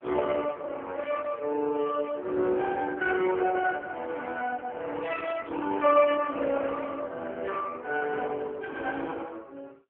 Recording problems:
telephone audio; 300 Hz to 2.2 kHz, AMR-NB

